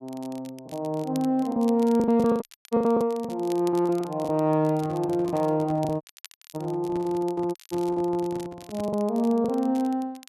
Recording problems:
crackling; vinyl, SNR 23 dB
packet loss; 11% of the sound replaced, filled with the last packet
dropout; at 2.5 s, at 6 s for 0.5 s and at 7.5 s
microphone handling noise; from 4.5 to 9 s; peak -10 dB vs average level

